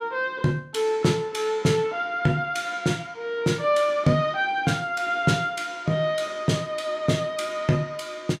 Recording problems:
none

